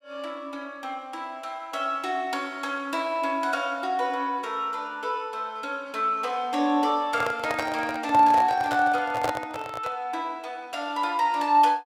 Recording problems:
microphone handling noise; from 7 to 10 s; peak +2 dB vs average level

